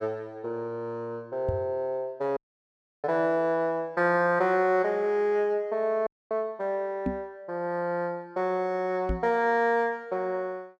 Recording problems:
microphone bump; at 1.5 s, at 7 s and at 9 s; peak +2 dB vs average level
audio cutting out; at 2.5 s for 0.5 s and at 6 s

